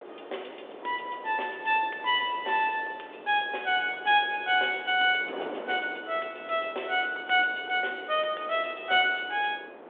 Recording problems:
phone line; 320 Hz to 3.6 kHz, G.726
wind noise; below 810 Hz, SNR 16 dB

